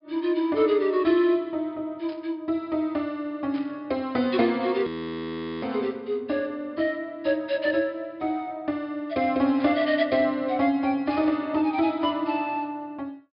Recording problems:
treble cut off; nothing above 5.5 kHz
static burst; 5 times, first at 2 s; peak -14 dB vs average level
frozen audio; at 5 s for 1 s

